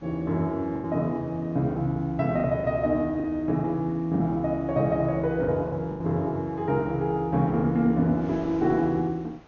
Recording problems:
treble missing; nothing above 6.8 kHz
wind noise; below 1.1 kHz, SNR 26 dB
packet loss; 6% of the sound replaced, filled with the last packet

